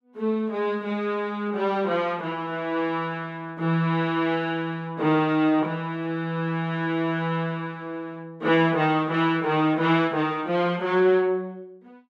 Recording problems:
none

